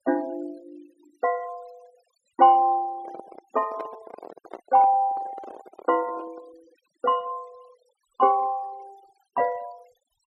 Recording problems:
noise reduction artefacts; signal-to-artefact ratio 26 dB
microphone handling noise; from 3 to 6.5 s; peak -9 dB vs average level

